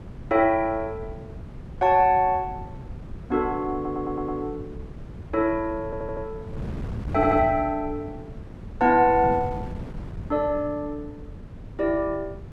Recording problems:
wind noise; below 200 Hz, SNR 14 dB
audio stuttering; at 3.5 s, at 6 s and at 7 s

